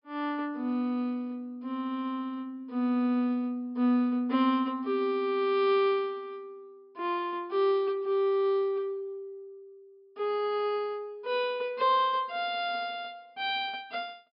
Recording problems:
low-pass filter; nothing above 5.5 kHz

